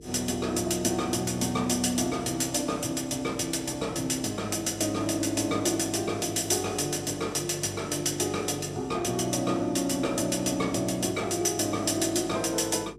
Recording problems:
electrical hum; 50 Hz, harmonics up to 450 Hz, SNR 22 dB

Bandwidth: 14.5 kHz